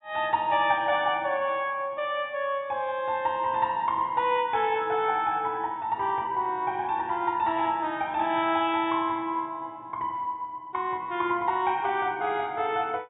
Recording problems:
low-pass filter; nothing above 4 kHz

